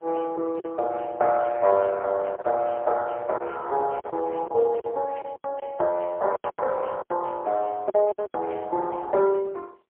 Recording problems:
phone line; 340 Hz to 3.2 kHz, AMR-NB, then MP3
packet loss; 8% of the sound replaced, filled with silence

